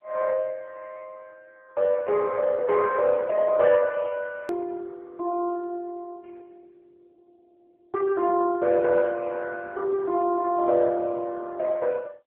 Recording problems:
phone line; 150 Hz to 2.1 kHz, AMR-NB
hard cut with a click; at 4.5 s

